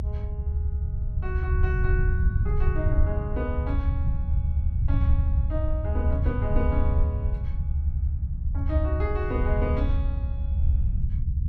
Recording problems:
low-frequency rumble; below 80 Hz, SNR -7 dB

